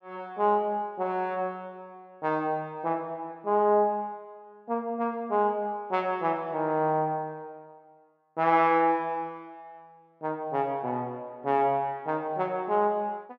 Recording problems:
none

